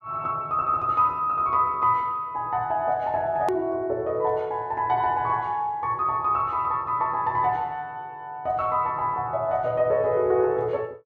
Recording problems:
click at an edit; at 3.5 s

